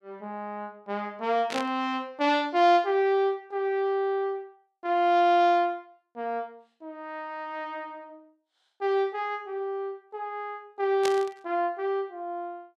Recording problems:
burst of static; at 1.5 s and at 11 s; peak -1 dB vs average level

